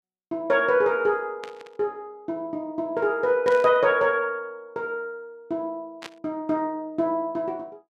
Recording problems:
burst of static; at 1.5 s, at 3.5 s and at 6 s; peak -8 dB vs average level

